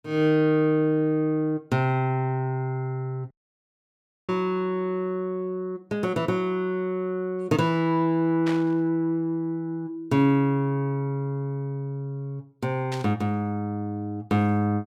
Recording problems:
dropout; at 3.5 s for 1 s
burst of static; at 8.5 s and at 13 s; peak -6 dB vs average level

